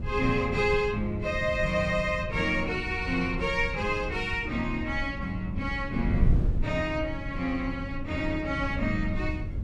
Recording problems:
wind noise; below 120 Hz, SNR 6 dB

